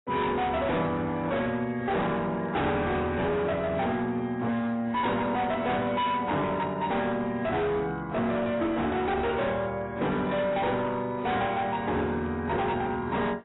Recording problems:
lossy compression; AAC, log-spectral distance 2 dB, nothing above 3.8 kHz
distorted audio; hard clipping, signal-to-distortion ratio 8 dB

